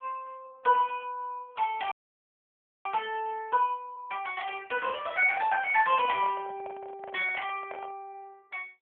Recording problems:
phone line; 320 Hz to 3.3 kHz, AMR-NB
audio freezing; at 2 s for 1 s
microphone handling noise; from 5 to 8 s; peak -8 dB vs average level

